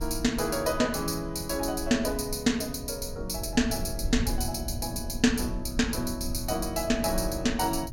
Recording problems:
mains hum; 60 Hz, harmonics up to 660 Hz, SNR 21 dB
rumble; below 86 Hz, SNR 10 dB

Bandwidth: 16.5 kHz